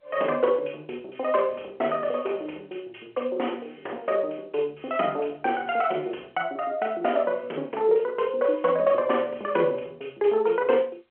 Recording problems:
phone line; 300 Hz to 3.3 kHz, G.711

